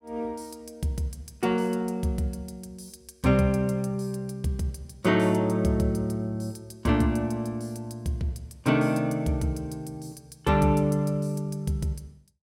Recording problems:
none

